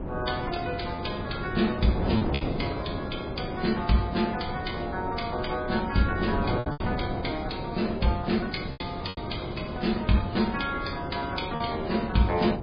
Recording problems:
lossy compression; MP3, log-spectral distance 6 dB, nothing above 4.8 kHz
wind on the microphone; below 450 Hz, SNR 5 dB
lost packets; 4% of the sound replaced, filled with repeated pitch periods

